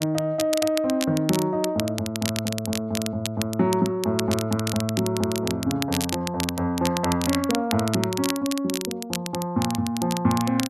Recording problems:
crackle; vinyl, SNR 7 dB

